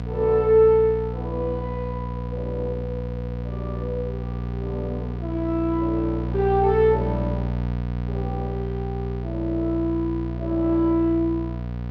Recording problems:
hum; 60 Hz, harmonics up to 960 Hz, SNR 5 dB

